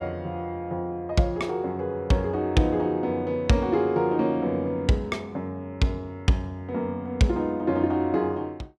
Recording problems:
none

